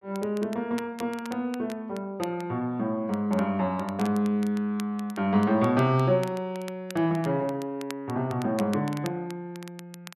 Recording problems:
crackle; vinyl, SNR 19 dB

